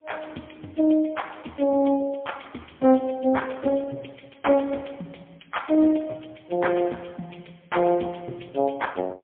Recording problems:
phone line; 170 Hz to 3.4 kHz, AMR-NB, then MP3

